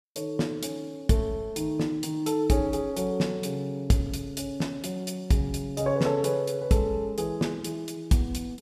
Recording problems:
none

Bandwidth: 14.5 kHz